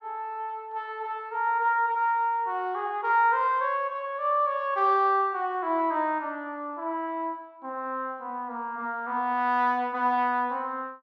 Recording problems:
none

